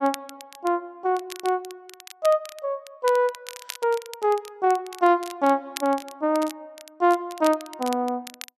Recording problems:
crackle; vinyl, SNR 17 dB

